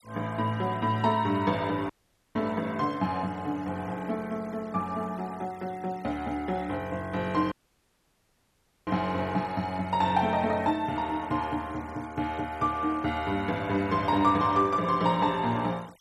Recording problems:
noise reduction artefacts; signal-to-artefact ratio 24 dB
dropout; at 2 s and at 7.5 s for 1.5 s

